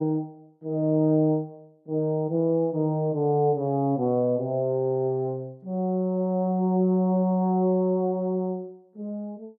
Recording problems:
none

